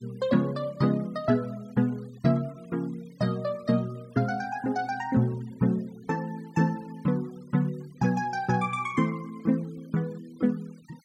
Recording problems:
noise reduction artefacts; signal-to-artefact ratio 26 dB

